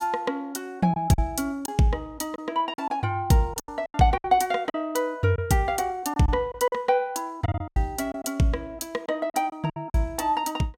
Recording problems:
packet loss; 9% of the sound replaced, filled with silence

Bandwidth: 16 kHz